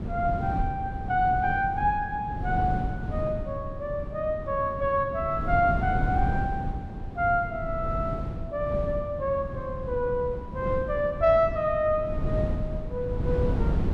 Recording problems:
wind noise; below 180 Hz, SNR 5 dB

